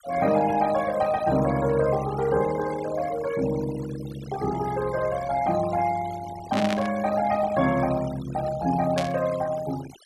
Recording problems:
noise reduction artefacts; signal-to-artefact ratio 15 dB
burst of static; at 6.5 s and at 9 s; peak -2 dB vs average level

